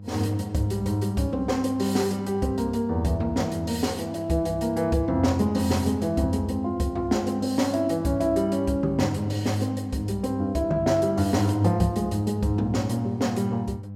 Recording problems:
hum; 50 Hz, harmonics up to 500 Hz, SNR 14 dB

